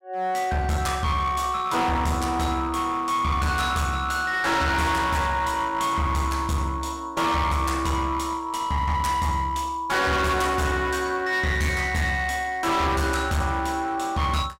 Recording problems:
distorted audio; hard clipping, uneven, signal-to-distortion ratio 7 dB

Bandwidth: 16 kHz